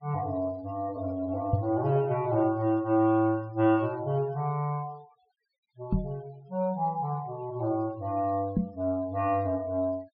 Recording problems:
low-pass filter; nothing above 5.5 kHz
denoising artefacts; signal-to-artefact ratio 28 dB
microphone bump; at 1.5 s, at 6 s and at 8.5 s; peak +6 dB vs average level

